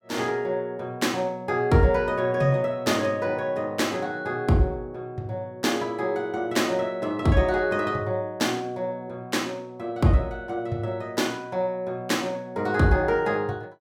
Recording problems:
none

